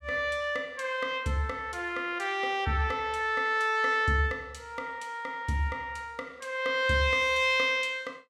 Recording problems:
none

